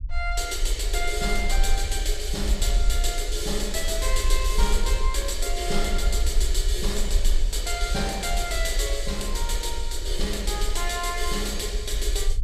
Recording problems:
rumble; below 46 Hz, SNR 1 dB

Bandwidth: 15.5 kHz